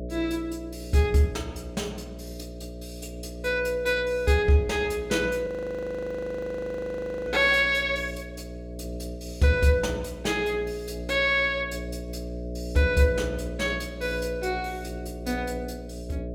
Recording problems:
hum; 60 Hz, harmonics up to 660 Hz, SNR 12 dB
frozen audio; at 5.5 s for 2 s

